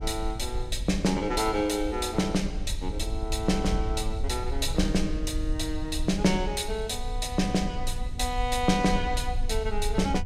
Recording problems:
rumble; below 58 Hz, SNR 6 dB

